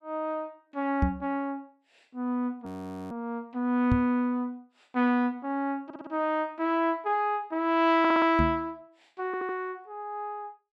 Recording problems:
microphone bump; at 1 s, at 4 s and at 8.5 s; peak +6 dB vs average level
audio freezing; at 2.5 s
stutter; at 6 s, at 8 s and at 9.5 s

